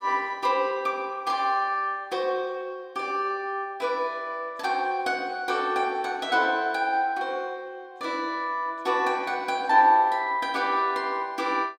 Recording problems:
none

